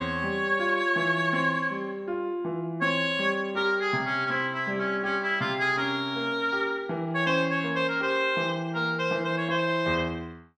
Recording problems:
none

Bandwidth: 12.5 kHz